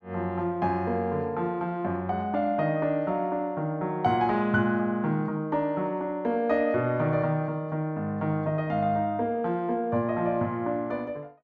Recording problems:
none

